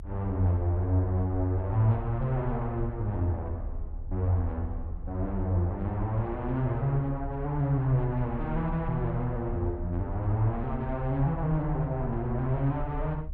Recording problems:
low-frequency rumble; below 70 Hz, strongest tone 30 Hz, SNR 10 dB

